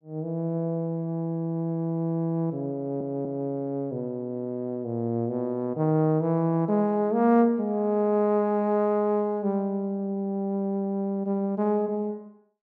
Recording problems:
stutter; at 3 s

